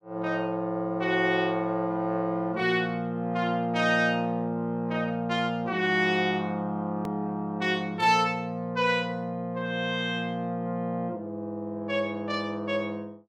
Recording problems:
click at an edit; at 7 s

